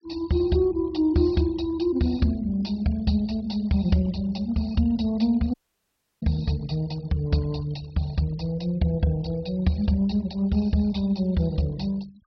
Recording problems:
low-pass filter; nothing above 5.5 kHz
denoising artefacts; signal-to-artefact ratio 24 dB
dropout; at 5.5 s for 0.5 s

